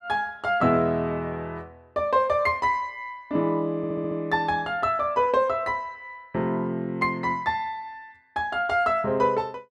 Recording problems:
stutter; at 4 s

